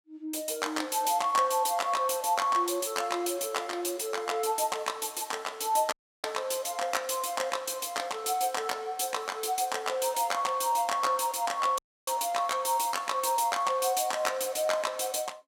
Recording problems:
dropout; at 6 s and at 12 s

